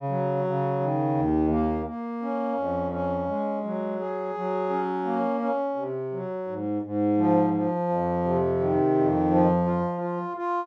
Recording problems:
none

